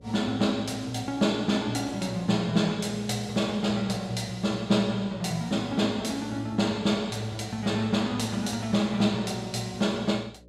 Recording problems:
hum; 60 Hz, harmonics up to 600 Hz, SNR 25 dB

